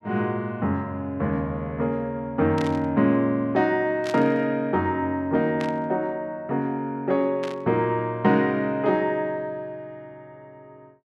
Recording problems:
burst of static; 4 times, first at 2.5 s; peak -8 dB vs average level

